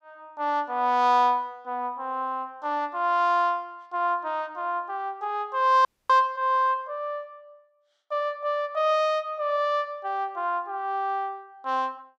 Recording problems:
frozen audio; at 6 s

